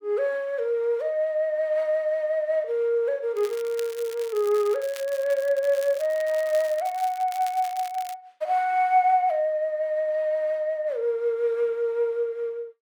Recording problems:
crackling; from 3.5 to 8 s; loose cable, SNR 19 dB

